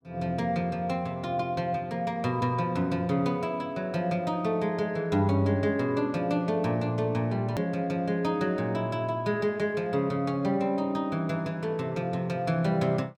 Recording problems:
hard cut with a click; at 7.5 s

